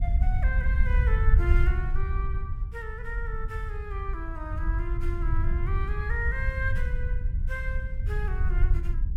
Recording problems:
wind noise; below 68 Hz, SNR -8 dB

